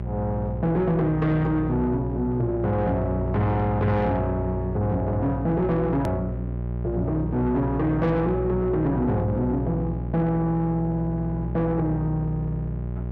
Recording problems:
distortion; soft clipping, signal-to-distortion ratio 11 dB
hum; 60 Hz, harmonics up to 600 Hz, SNR 5 dB
hard cut with a click; at 6 s

